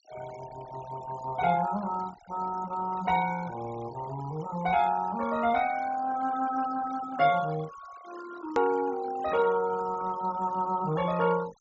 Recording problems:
treble cut off; nothing above 8 kHz
noise reduction artefacts; signal-to-artefact ratio 16 dB
click at an edit; at 8.5 s

